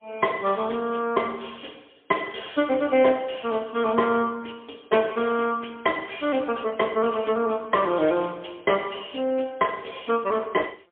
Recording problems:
telephone audio; 190 Hz to 3.4 kHz, AMR-NB, then MP3

